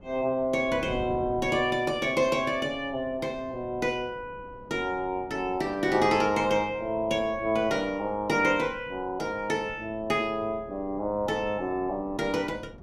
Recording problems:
wind on the microphone; below 360 Hz, SNR 19 dB

